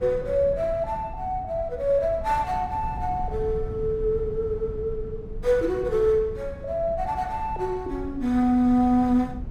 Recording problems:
low-frequency rumble; below 130 Hz, SNR 13 dB

